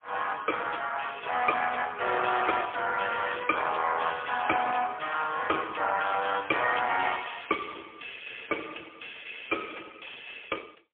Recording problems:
telephone audio; 300 Hz to 3.3 kHz, AMR-NB, then MP3

